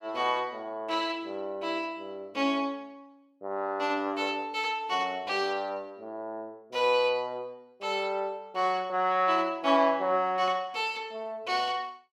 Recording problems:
none

